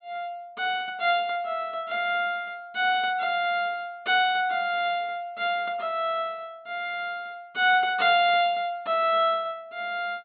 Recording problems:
treble cut off; nothing above 4.4 kHz

